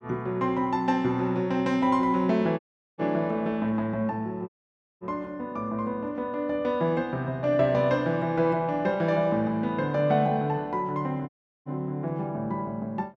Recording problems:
audio cutting out; at 2.5 s, at 4.5 s for 0.5 s and at 11 s

